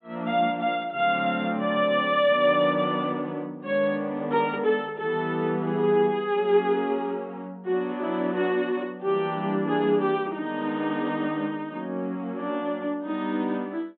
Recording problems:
low-pass filter; nothing above 4 kHz

